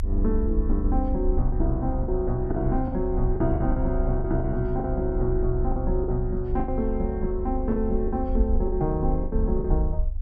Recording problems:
low-frequency rumble; below 56 Hz, strongest tone 28 Hz, SNR 2 dB
lost packets; 9% of the sound replaced, filled with the last packet

